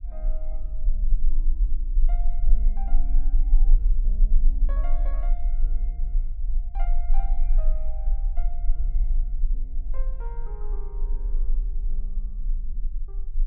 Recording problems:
rumble; below 34 Hz, strongest tone 18 Hz, SNR -19 dB

